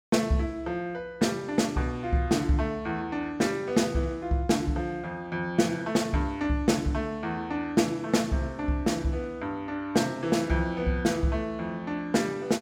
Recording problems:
none

